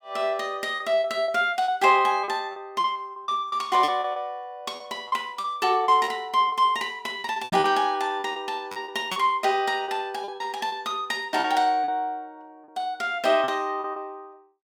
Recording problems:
lost packets; 11% of the sound replaced, filled with repeated pitch periods
microphone bump; at 7.5 s; peak -6 dB vs average level

